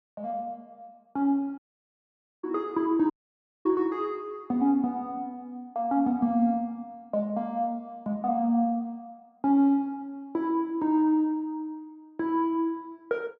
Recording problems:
dropout; at 1.5 s for 1 s and at 3 s for 0.5 s

